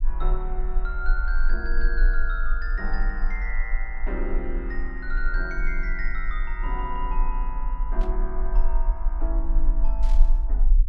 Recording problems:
low-frequency rumble; below 36 Hz, strongest tone 18 Hz, SNR -6 dB
burst of static; at 8 s and at 10 s; peak -9 dB vs average level

